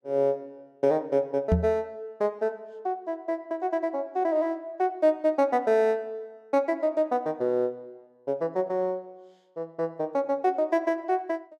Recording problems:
microphone bump; at 1.5 s; peak +7 dB vs average level

